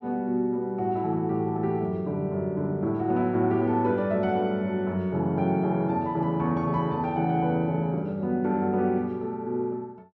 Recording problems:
none

